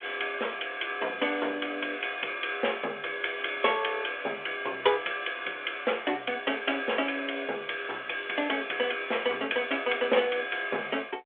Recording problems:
telephone audio; 320 Hz to 3.4 kHz, G.726

